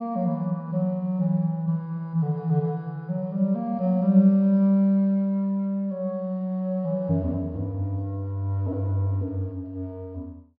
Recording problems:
treble cut off; nothing above 5.5 kHz

